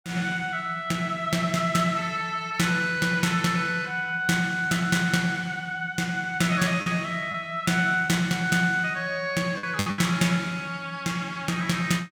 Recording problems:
lost packets; 2% of the sound replaced, filled with the last packet

